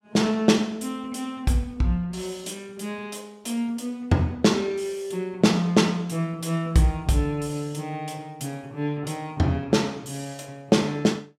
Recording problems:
none

